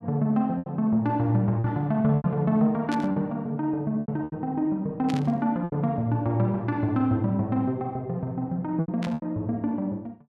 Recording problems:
lost packets; 6% of the sound replaced, filled with repeated pitch periods
static burst; at 3 s, at 5 s and at 9 s; peak -7 dB vs average level

